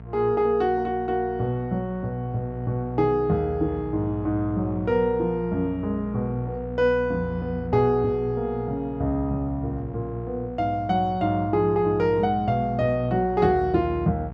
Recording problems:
hum; 60 Hz, harmonics up to 1.1 kHz, SNR 13 dB

